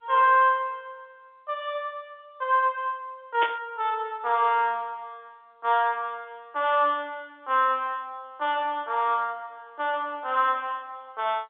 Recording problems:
phone line; 300 Hz to 3.6 kHz, G.711
burst of static; at 3.5 s; peak -1 dB vs average level

